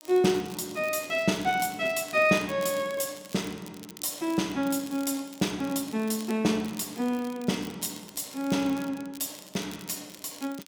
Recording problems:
crackle; vinyl, SNR 18 dB

